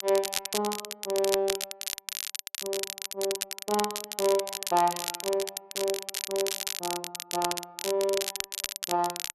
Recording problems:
crackling; vinyl, SNR 2 dB

